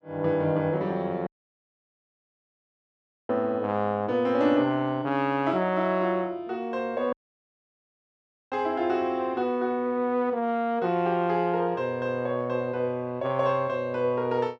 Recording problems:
audio cutting out; at 1.5 s for 2 s and at 7 s for 1.5 s

